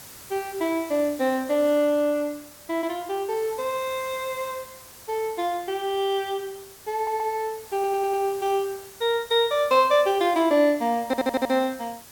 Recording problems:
background hiss; slope -1 dB per octave, SNR 18 dB
stutter; at 7 s, at 7.5 s and at 11 s

